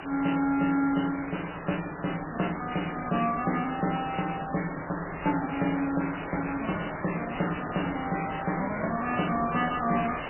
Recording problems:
lossy codec; MP3, log-spectral distance 17 dB, nothing above 3 kHz
hiss; SNR 8 dB

